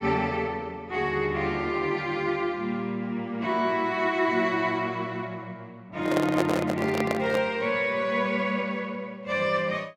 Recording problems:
microphone handling noise; from 6 to 7.5 s; peak +4 dB vs average level

